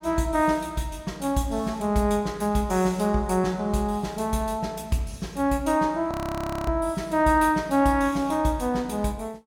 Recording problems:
frozen audio; at 6 s for 0.5 s

